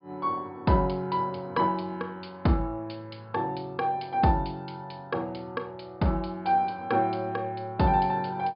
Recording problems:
treble missing; nothing above 5.1 kHz

